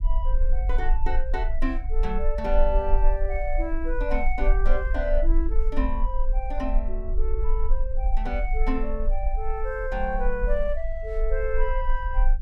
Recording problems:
low-frequency rumble; below 38 Hz, strongest tone 18 Hz, SNR -2 dB

